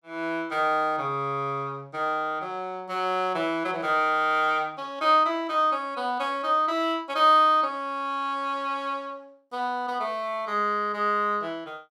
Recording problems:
none

